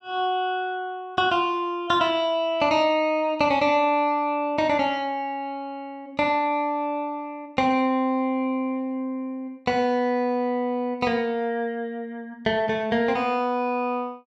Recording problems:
none

